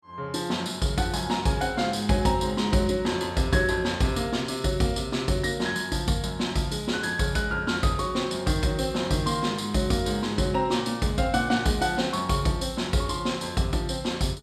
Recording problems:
none

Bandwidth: 14.5 kHz